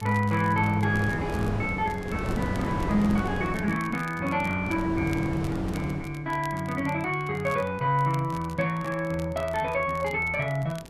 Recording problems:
wind noise; below 540 Hz, SNR 7 dB
crackling; vinyl, SNR 22 dB

